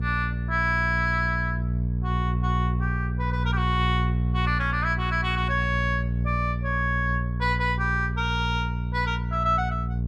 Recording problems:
mains hum; 60 Hz, harmonics up to 420 Hz, SNR 1 dB

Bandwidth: 13 kHz